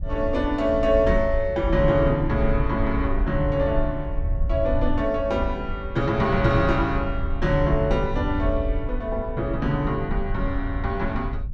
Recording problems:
wind on the microphone; below 72 Hz, SNR 6 dB

